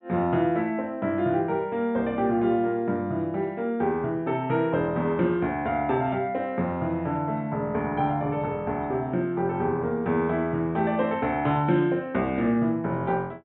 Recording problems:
low-pass filter; nothing above 3.9 kHz

